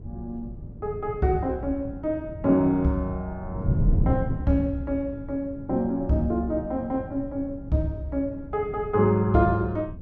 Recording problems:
wind noise; below 160 Hz, SNR 8 dB

